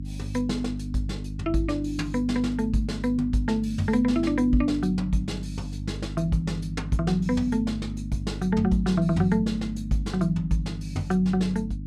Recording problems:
hum; 50 Hz, harmonics up to 300 Hz, SNR 9 dB

